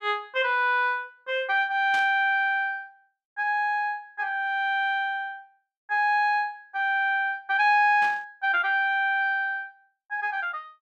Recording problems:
burst of static; at 2 s and at 8 s; peak -9 dB vs average level

